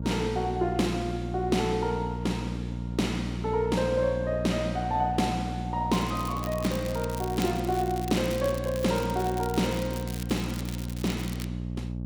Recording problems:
hum; 60 Hz, harmonics up to 600 Hz, SNR 5 dB
crackling; from 6 to 11 s; loose cable, SNR 14 dB

